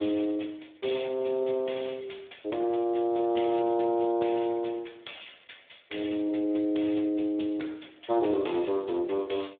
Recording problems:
telephone audio; 280 Hz to 3.6 kHz, Speex

